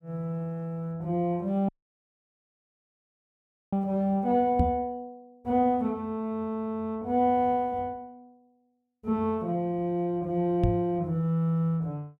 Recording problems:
dropout; at 1.5 s for 2 s
knock on the microphone; at 4.5 s and at 11 s; peak +6 dB vs average level

